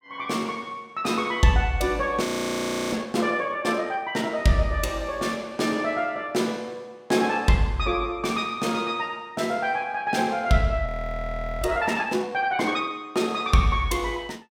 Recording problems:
frozen audio; at 2.5 s for 0.5 s and at 11 s for 1 s

